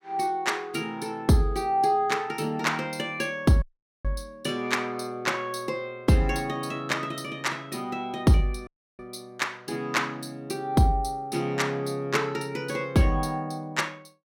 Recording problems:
dropout; at 3.5 s and at 8.5 s

